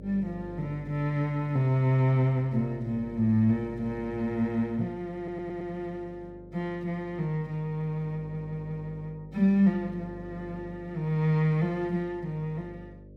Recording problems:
mains hum; 50 Hz, harmonics up to 600 Hz, SNR 18 dB
stutter; at 5 s and at 8 s

